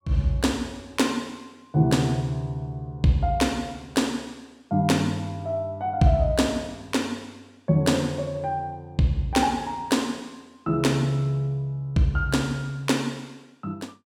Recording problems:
none

